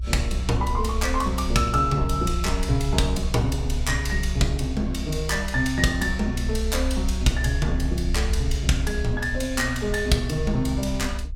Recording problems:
low-frequency rumble; below 64 Hz, strongest tone 64 Hz, SNR 4 dB

